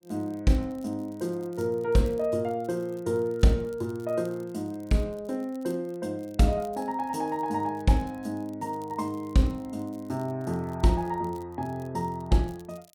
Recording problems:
crackle; vinyl, SNR 29 dB

